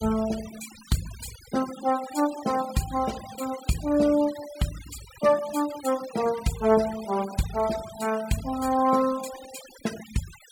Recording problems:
noise reduction artefacts; signal-to-artefact ratio 15 dB

